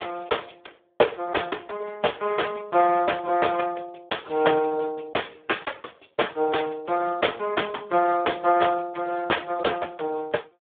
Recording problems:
phone line; 320 Hz to 3.6 kHz, Speex

